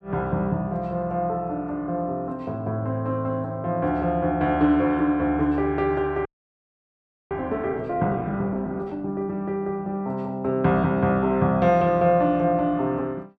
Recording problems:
audio freezing; at 6.5 s for 1 s

